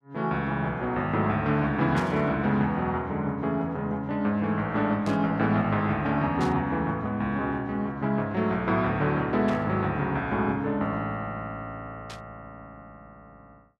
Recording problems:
burst of static; 5 times, first at 2 s; peak -9 dB vs average level

